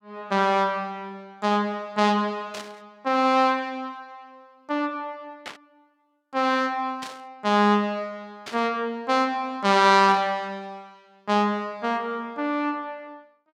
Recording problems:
static burst; 5 times, first at 2.5 s; peak -8 dB vs average level

